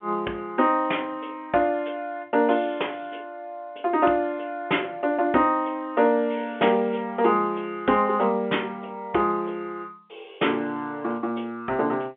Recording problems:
telephone audio; 260 Hz to 3.4 kHz, G.711

